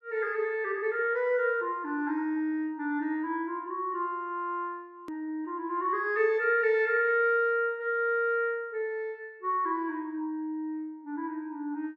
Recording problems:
hard cut with a click; at 5 s

